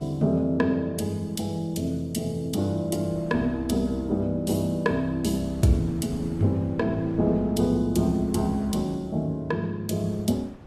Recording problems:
lossy codec; AAC, log-spectral distance 2 dB, nothing above 15.1 kHz
wind on the microphone; below 430 Hz, SNR 21 dB

